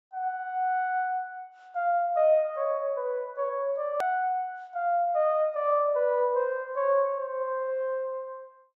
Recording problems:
low-pass filter; nothing above 8 kHz
edit click; at 4 s

